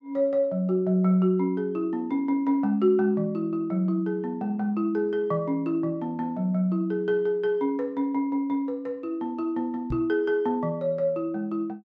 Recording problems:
microphone bump; at 10 s; peak -2 dB vs average level

